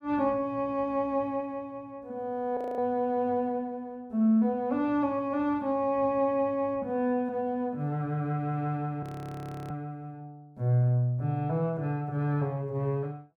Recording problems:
frozen audio; at 2.5 s and at 9 s for 0.5 s

